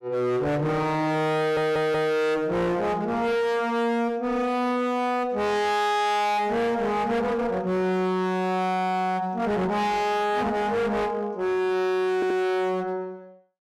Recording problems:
distortion; hard clipping, signal-to-distortion ratio 7 dB
stutter; at 1.5 s and at 12 s

